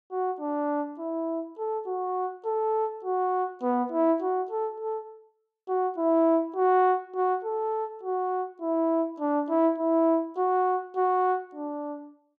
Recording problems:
none

